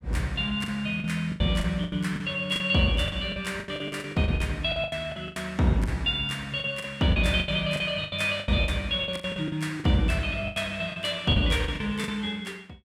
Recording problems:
lost packets; 16% of the sound replaced, filled with the last packet

